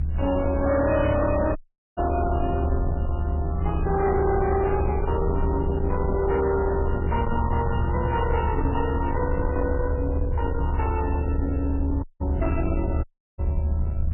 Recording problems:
lossy compression; MP3, log-spectral distance 2 dB, nothing above 2.5 kHz
distorted audio; soft clipping, signal-to-distortion ratio 10 dB
rumble; below 84 Hz, strongest tone 74 Hz, SNR 2 dB
wind on the microphone; below 420 Hz, SNR 17 dB
audio cutting out; at 1.5 s, at 12 s and at 13 s

